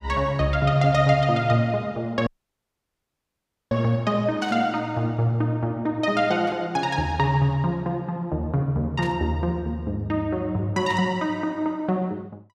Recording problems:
audio cutting out; at 2.5 s for 1.5 s
static burst; 4 times, first at 4.5 s; peak -11 dB vs average level

